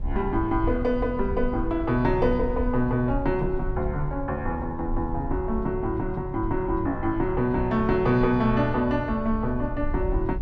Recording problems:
rumble; below 64 Hz, SNR 9 dB

